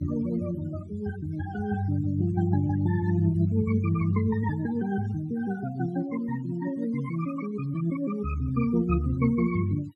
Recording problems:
noise reduction artefacts; signal-to-artefact ratio 22 dB

